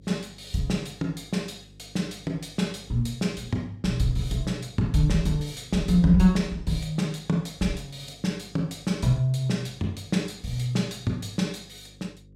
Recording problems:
mains hum; 50 Hz, harmonics up to 550 Hz, SNR 25 dB

